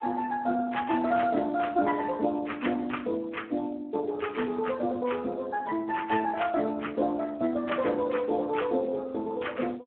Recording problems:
phone line; 86 Hz to 3.3 kHz, Speex

